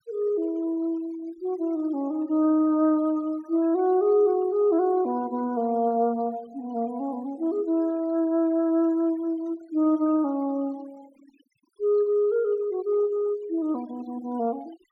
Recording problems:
denoising artefacts; signal-to-artefact ratio 27 dB

